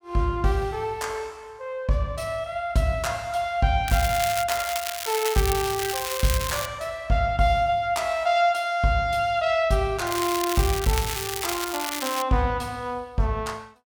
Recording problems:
crackling; at 4 s, from 4.5 to 6.5 s and from 10 to 12 s; loose cable, SNR 5 dB

